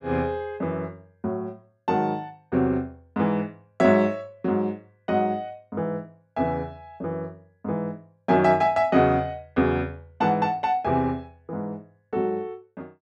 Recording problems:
none

